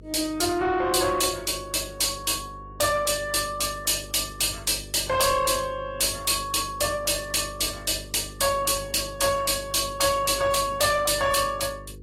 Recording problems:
codec artefacts; AAC, log-spectral distance 6 dB
distortion; soft clipping, signal-to-distortion ratio 10 dB
electrical hum; 50 Hz, harmonics up to 500 Hz, SNR 20 dB

